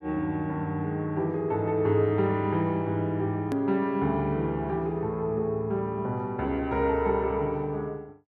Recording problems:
click at an edit; at 3.5 s

